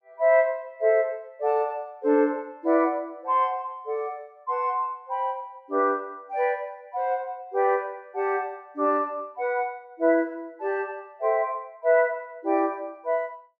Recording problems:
none

